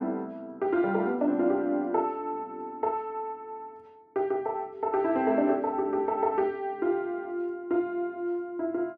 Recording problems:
none

